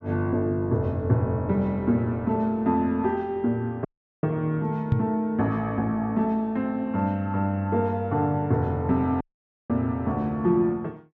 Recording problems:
audio cutting out; at 4 s and at 9 s
microphone thump; at 5 s; peak +7 dB vs average level

